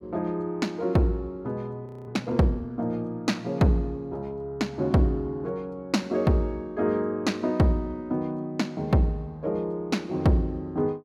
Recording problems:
audio freezing; at 2 s

